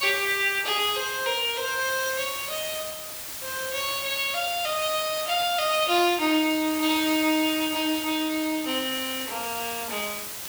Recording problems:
hiss; slope 0 dB per octave, SNR 8 dB
crackling; vinyl, SNR 29 dB

